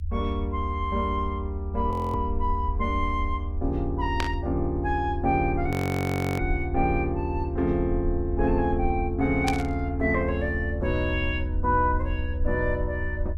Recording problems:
low-frequency rumble; below 80 Hz, SNR 4 dB
audio freezing; at 2 s and at 5.5 s for 0.5 s
static burst; at 4 s and at 9.5 s; peak +3 dB vs average level

